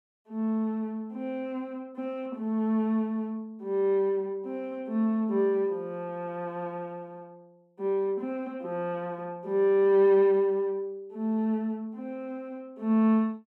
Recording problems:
none

